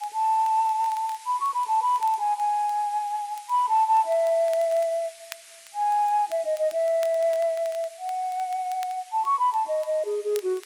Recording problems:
codec artefacts; AAC, log-spectral distance 5 dB
hiss; SNR 21 dB
crackle; vinyl, SNR 25 dB

